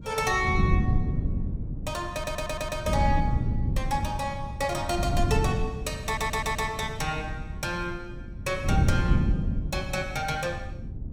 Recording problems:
wind on the microphone; below 160 Hz, SNR 0 dB
audio stuttering; at 2 s and at 6 s

